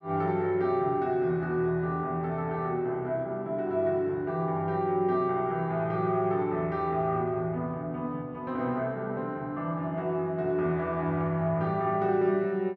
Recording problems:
none

